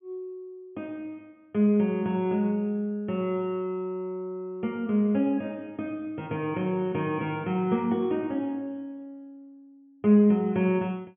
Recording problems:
treble cut off; nothing above 3.3 kHz

